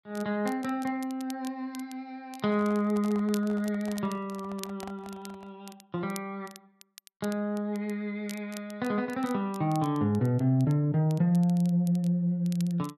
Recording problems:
crackling; vinyl, SNR 21 dB
handling noise; from 2.5 to 5.5 s; peak -10 dB vs average level

